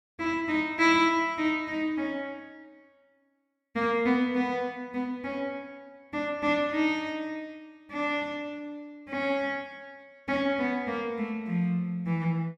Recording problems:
none

